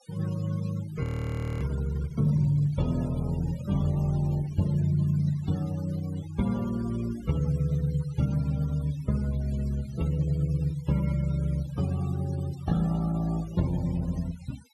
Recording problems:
noise reduction artefacts; signal-to-artefact ratio 19 dB
frozen audio; at 1 s for 0.5 s

